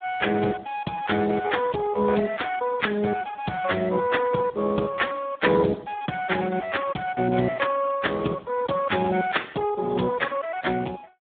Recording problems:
telephone audio; 130 Hz to 3.7 kHz, Speex

